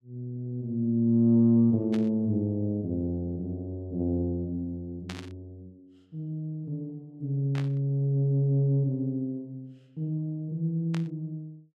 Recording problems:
burst of static; 4 times, first at 2 s; peak -8 dB vs average level

